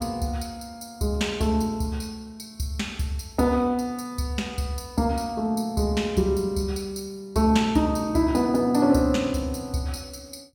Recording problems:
none

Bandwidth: 17 kHz